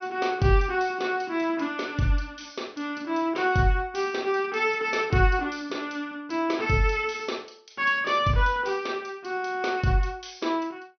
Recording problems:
low-pass filter; nothing above 6.1 kHz

